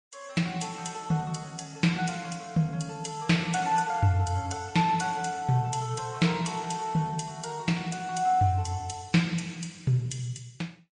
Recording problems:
lossy codec; MP3, then MP3, log-spectral distance 3 dB, nothing above 9.8 kHz

